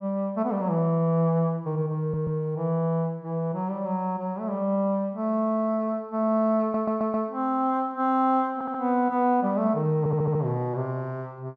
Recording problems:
stutter; 4 times, first at 2 s

